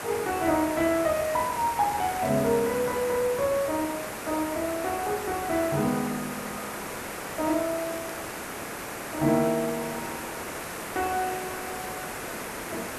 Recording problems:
hiss; SNR 7 dB
crackle; from 1 to 2.5 s, at 8 s and at 10 s; loose cable, SNR 24 dB

